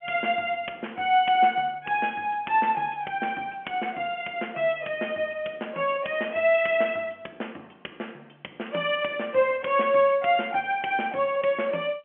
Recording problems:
phone line; 240 Hz to 3.2 kHz, G.711

